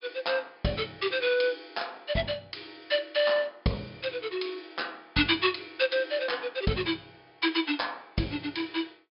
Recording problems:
treble cut off; nothing above 5.5 kHz

